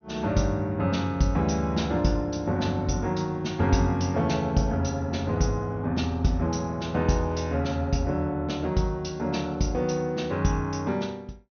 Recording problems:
treble cut off; nothing above 6.4 kHz

